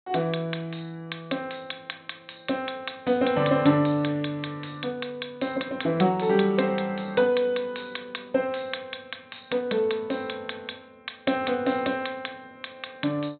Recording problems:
low-pass filter; nothing above 4 kHz

